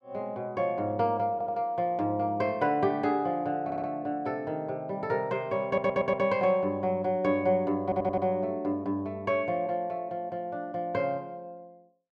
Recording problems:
audio stuttering; 4 times, first at 1.5 s

